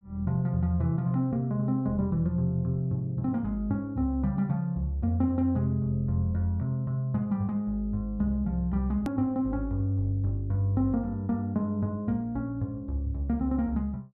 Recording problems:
edit click; at 9 s

